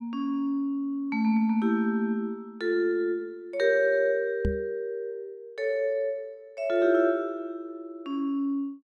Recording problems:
knock on the microphone; at 4.5 s; peak +2 dB vs average level

